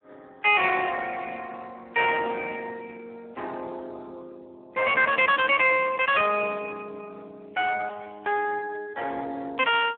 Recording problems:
phone line; 340 Hz to 3.6 kHz, Speex

